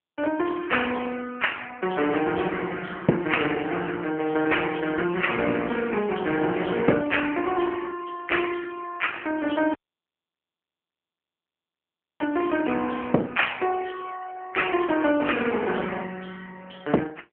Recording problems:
phone line; 190 Hz to 3.1 kHz, AMR-NB
audio cutting out; at 9.5 s for 2.5 s

